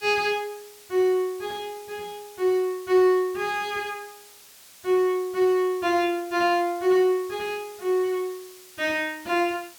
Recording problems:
hiss; slope +1 dB per octave, SNR 22 dB

